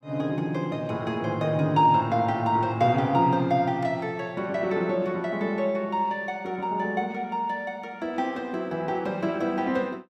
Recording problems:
none

